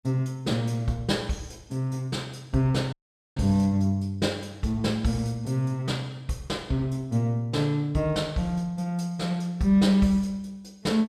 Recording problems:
dropout; at 3 s

